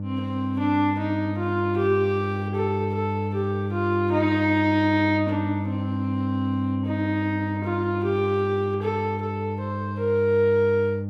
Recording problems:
mains hum; 50 Hz, harmonics up to 600 Hz, SNR 5 dB

